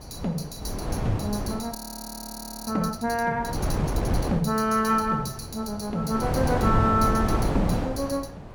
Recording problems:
wind on the microphone; below 470 Hz, SNR 2 dB
frozen audio; at 2 s for 1 s

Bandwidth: 17.5 kHz